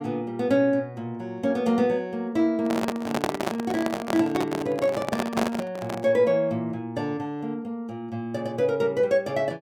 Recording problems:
handling noise; from 2.5 to 6 s; peak +4 dB vs average level

